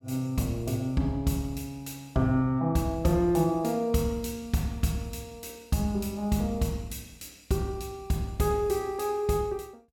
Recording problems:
none

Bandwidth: 17 kHz